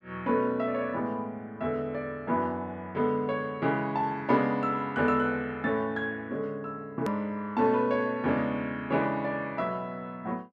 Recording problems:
edit click; at 7 s

